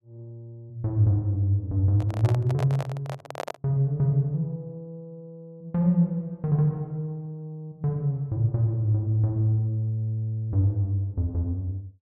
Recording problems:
microphone handling noise; from 2 to 3.5 s; peak -2 dB vs average level

